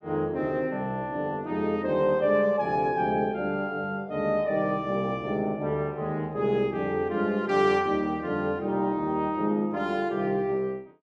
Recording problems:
none

